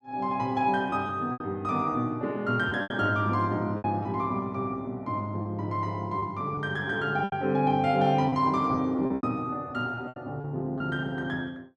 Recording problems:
lost packets; 7% of the sound replaced, filled with repeated pitch periods

